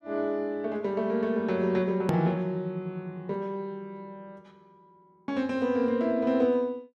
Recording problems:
hard cut with a click; at 2 s

